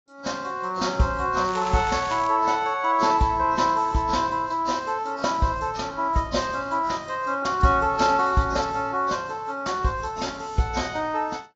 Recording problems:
codec artefacts; AAC, log-spectral distance 3 dB, nothing above 7.3 kHz
crackling; at 1.5 s; loose cable, SNR 15 dB

